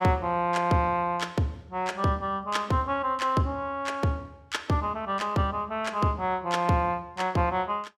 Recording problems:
none

